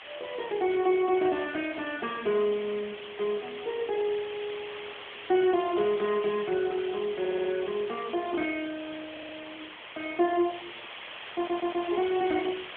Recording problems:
phone line; 280 Hz to 3.3 kHz, AMR-NB
background hiss; SNR 12 dB
audio stuttering; at 7 s, at 9 s and at 11 s

